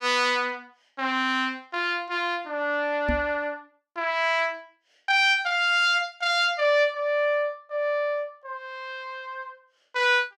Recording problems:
microphone bump; at 3 s; peak 0 dB vs average level

